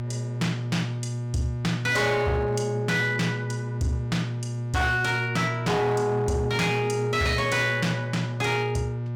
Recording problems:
distorted audio; hard clipping, uneven, signal-to-distortion ratio 12 dB
electrical hum; 60 Hz, harmonics up to 600 Hz, SNR 5 dB

